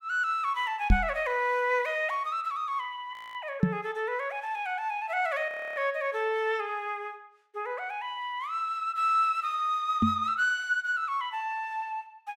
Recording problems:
knock on the microphone; at 1 s, at 3.5 s and at 10 s; peak +10 dB vs average level
audio freezing; at 3 s and at 5.5 s

